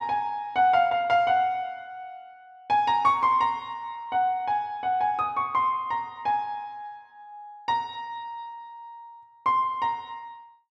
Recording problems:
none

